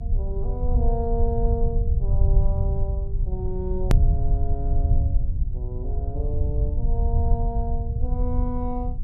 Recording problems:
hum; 50 Hz, harmonics up to 400 Hz, SNR 21 dB
rumble; below 74 Hz, SNR -8 dB
click at an edit; at 4 s

